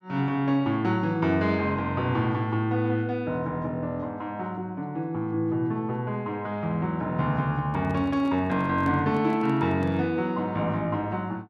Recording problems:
microphone handling noise; from 7.5 to 10 s; peak -7 dB vs average level

